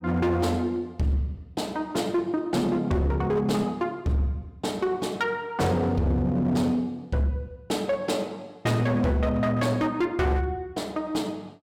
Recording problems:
distortion; hard clipping, signal-to-distortion ratio 10 dB

